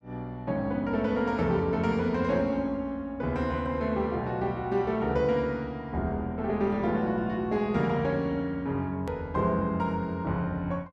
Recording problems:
edit click; at 9 s

